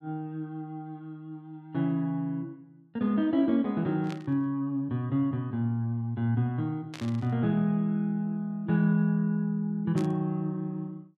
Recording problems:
burst of static; at 4 s, at 7 s and at 10 s; peak -9 dB vs average level

